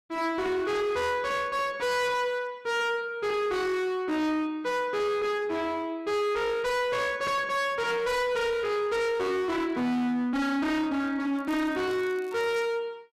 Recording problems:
distorted audio; hard clipping, uneven, signal-to-distortion ratio 6 dB
crackling; from 11 to 13 s; loose cable, SNR 27 dB

